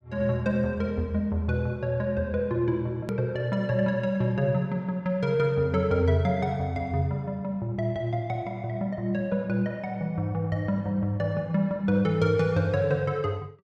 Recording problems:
hard cut with a click; at 3 s

